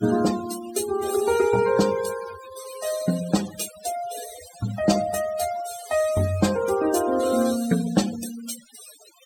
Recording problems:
noise reduction artefacts; signal-to-artefact ratio 12 dB

